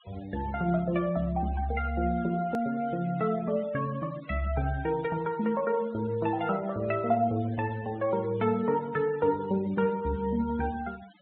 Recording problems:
treble missing; nothing above 4 kHz
denoising artefacts; signal-to-artefact ratio 22 dB
hard cut with a click; at 2.5 s

